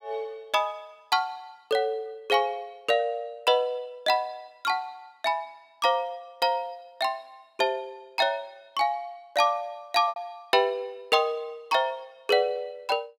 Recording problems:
lost packets; 0.7% of the sound replaced, filled with repeated pitch periods

